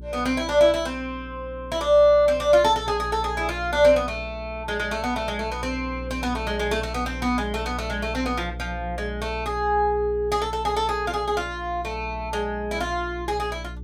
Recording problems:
hum; 60 Hz, harmonics up to 420 Hz, SNR 13 dB

